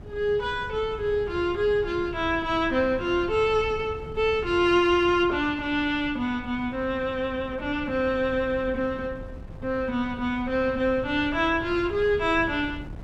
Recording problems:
wind on the microphone; below 180 Hz, SNR 16 dB

